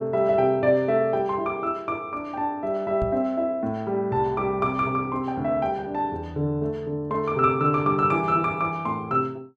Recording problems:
knock on the microphone; at 3 s; peak -3 dB vs average level

